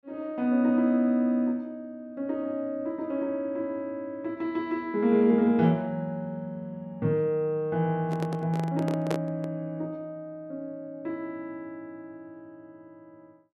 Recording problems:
microphone handling noise; from 8 to 9.5 s; peak +3 dB vs average level

